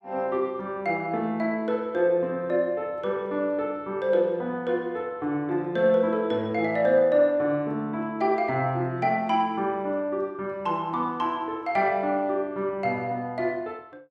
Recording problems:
none

